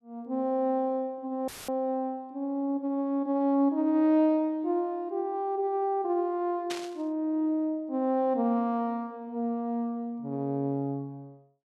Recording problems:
audio cutting out; at 1.5 s; filled with static
static burst; at 6.5 s; peak -3 dB vs average level

